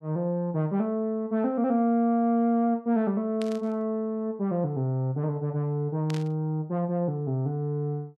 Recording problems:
static burst; at 3.5 s and at 6 s; peak -9 dB vs average level

